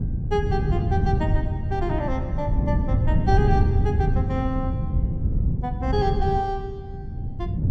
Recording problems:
wind on the microphone; below 140 Hz, SNR -4 dB

